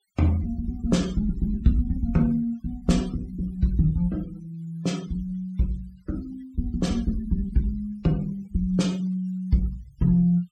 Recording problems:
denoising artefacts; signal-to-artefact ratio 24 dB

